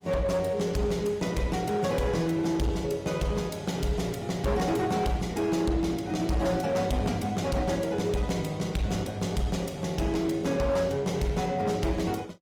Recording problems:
codec artefacts; Opus, log-spectral distance 3 dB, nothing above 19 kHz
distortion; hard clipping, signal-to-distortion ratio 11 dB

